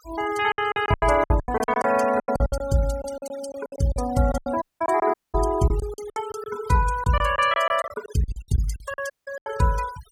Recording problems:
noise reduction artefacts; signal-to-artefact ratio 16 dB
packet loss; 18% of the sound replaced, filled with silence
audio cutting out; at 4.5 s, at 5 s and at 9 s

